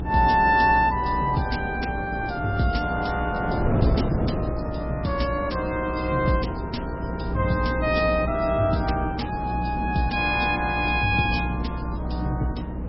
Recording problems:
lossy codec; MP3, log-spectral distance 3 dB, nothing above 5.5 kHz
hum; 60 Hz, harmonics up to 300 Hz, SNR 8 dB
wind on the microphone; below 420 Hz, SNR 8 dB

